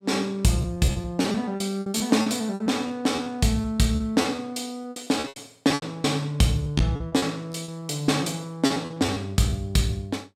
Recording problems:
lost packets; 15% of the sound replaced, filled with repeated pitch periods

